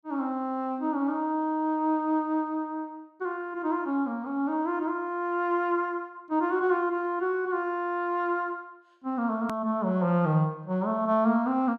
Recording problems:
hard cut with a click; at 9.5 s

